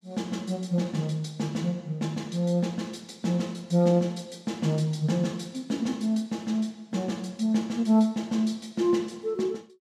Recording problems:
none

